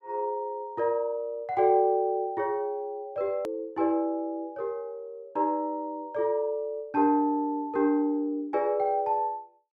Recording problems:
hard cut with a click; at 3.5 s

